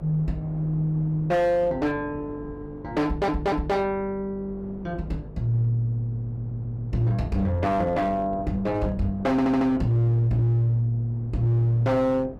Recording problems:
distortion; hard clipping, signal-to-distortion ratio 12 dB
electrical hum; 50 Hz, harmonics up to 500 Hz, SNR 19 dB
wind on the microphone; below 480 Hz, SNR 21 dB
stutter; at 3 s, at 6 s and at 9.5 s

